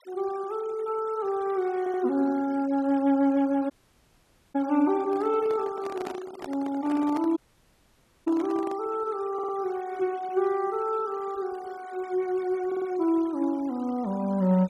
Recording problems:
noise reduction artefacts; signal-to-artefact ratio 23 dB
audio stuttering; at 2 s, at 9.5 s and at 13 s
audio cutting out; at 3.5 s for 1 s and at 7.5 s for 1 s
microphone handling noise; from 5 to 9 s; peak -4 dB vs average level

